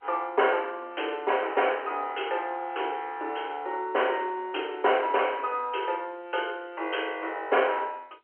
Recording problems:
telephone audio; 300 Hz to 3.2 kHz, G.711

